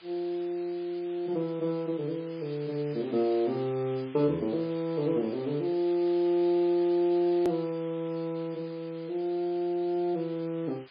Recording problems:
lossy compression; MP3, log-spectral distance 7 dB, nothing above 13.1 kHz
hiss; SNR 21 dB
edit click; at 7.5 s

